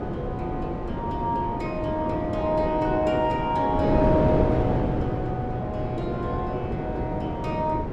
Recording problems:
wind on the microphone; below 480 Hz, SNR 1 dB

